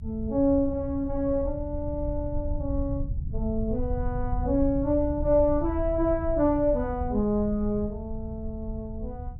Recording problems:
low-frequency rumble; below 86 Hz, SNR 7 dB

